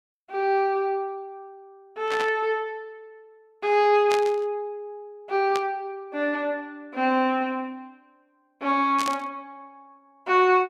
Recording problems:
burst of static; 4 times, first at 2 s; peak -3 dB vs average level

